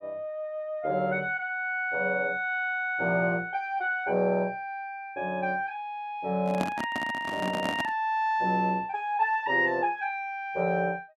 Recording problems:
handling noise; from 6.5 to 8 s; peak +1 dB vs average level

